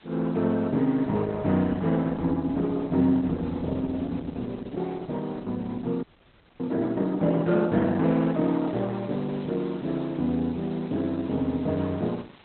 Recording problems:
lossy compression; Opus, log-spectral distance 5 dB, nothing above 4 kHz
hiss; SNR 26 dB
frozen audio; at 6 s for 0.5 s

